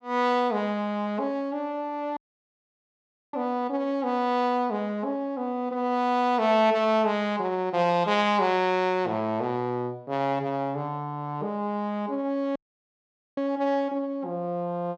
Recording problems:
dropout; at 2 s for 1 s and at 13 s for 1 s

